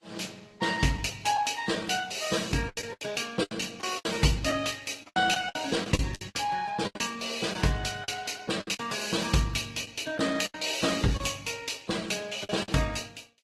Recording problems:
lossy codec; Opus, then Vorbis, log-spectral distance 6 dB, nothing above 12.7 kHz
lost packets; 10% of the sound replaced, filled with the last packet

